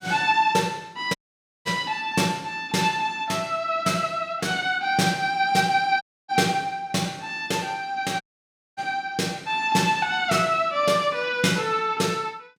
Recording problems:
audio cutting out; at 1 s for 0.5 s, at 6 s and at 8 s for 0.5 s

